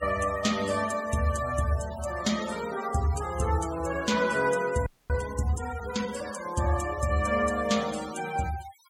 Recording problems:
noise reduction artefacts; signal-to-artefact ratio 15 dB
audio freezing; at 5 s

